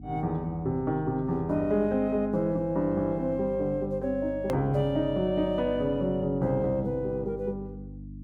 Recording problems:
hum; 50 Hz, harmonics up to 300 Hz, SNR 14 dB
click at an edit; at 4.5 s

